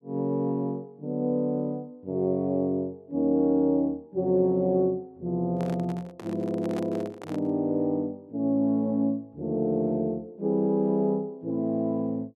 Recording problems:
microphone handling noise; from 5.5 to 7.5 s; peak -8 dB vs average level

